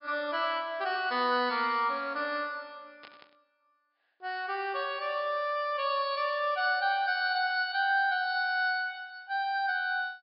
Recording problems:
treble missing; nothing above 5.5 kHz
burst of static; at 3 s; peak -15 dB vs average level

